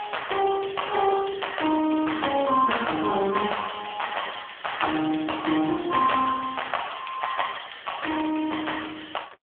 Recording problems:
telephone audio; 260 Hz to 3.4 kHz, AMR-NB

